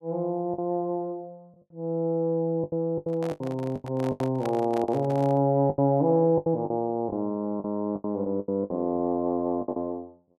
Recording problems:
lost packets; 11% of the sound replaced, filled with the last packet
handling noise; from 3 to 5.5 s; peak -5 dB vs average level

